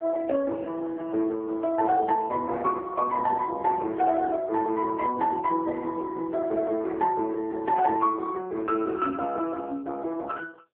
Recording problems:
phone line; 260 Hz to 2.2 kHz, AMR-NB

